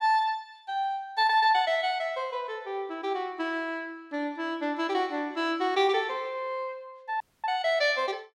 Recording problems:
dropout; at 7 s

